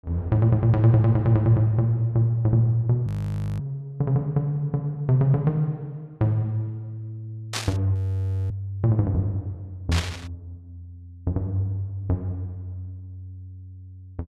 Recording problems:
frozen audio; at 3 s for 0.5 s and at 8 s for 0.5 s
static burst; at 7.5 s and at 10 s; peak 0 dB vs average level

